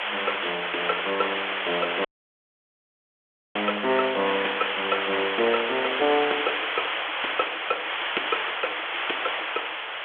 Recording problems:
phone line; 320 Hz to 4 kHz, G.726
background hiss; SNR -1 dB
audio cutting out; at 2 s for 1.5 s

